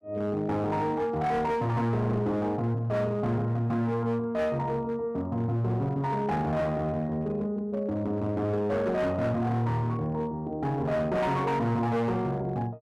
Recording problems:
distortion; hard clipping, signal-to-distortion ratio 11 dB

